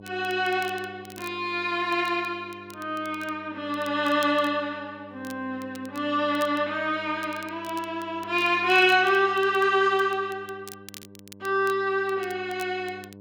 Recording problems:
hum; 50 Hz, harmonics up to 1 kHz, SNR 22 dB
crackling; vinyl, SNR 23 dB

